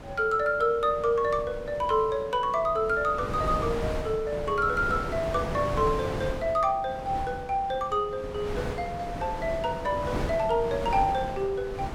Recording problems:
wind noise; below 670 Hz, SNR 9 dB

